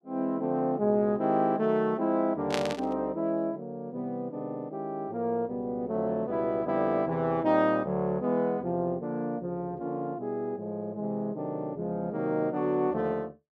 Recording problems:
burst of static; at 2.5 s; peak +1 dB vs average level

